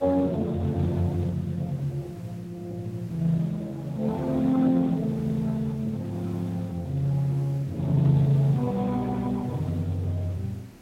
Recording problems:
codec artefacts; Speex, log-spectral distance 2 dB
hiss; slope -5 dB per octave, SNR 24 dB

